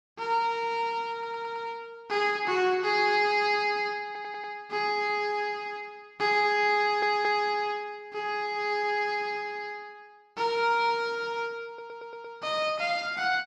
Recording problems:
stutter; 4 times, first at 1 s

